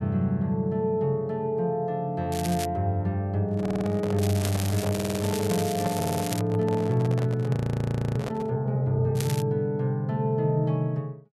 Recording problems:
crackling; at 2.5 s, from 4 to 6.5 s and at 9 s; loose cable, SNR 10 dB
handling noise; from 3.5 to 8.5 s; peak -2 dB vs average level
audio stuttering; at 3.5 s, at 5 s and at 6 s
frozen audio; at 7.5 s for 0.5 s

